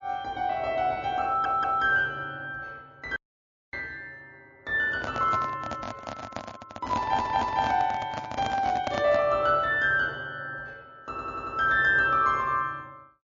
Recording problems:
codec artefacts; MP3, log-spectral distance 2 dB, nothing above 6.9 kHz
audio stuttering; at 1.5 s, at 7 s and at 11 s
audio cutting out; at 3 s for 0.5 s
handling noise; from 5 to 9.5 s; peak -1 dB vs average level

